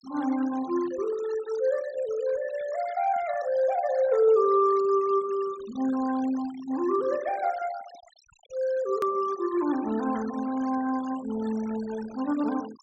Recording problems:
treble cut off; nothing above 8 kHz
noise reduction artefacts; signal-to-artefact ratio 19 dB
edit click; at 9 s

